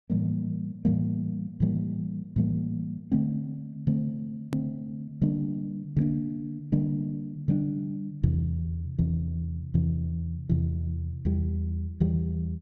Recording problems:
edit click; at 4.5 s

